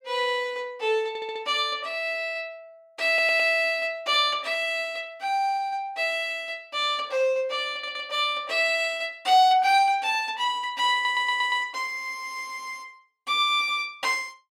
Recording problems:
audio stuttering; 4 times, first at 1 s

